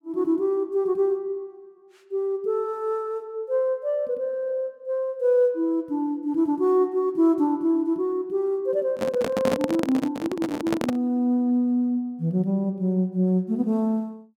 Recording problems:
microphone handling noise; from 9 to 11 s; peak +2 dB vs average level

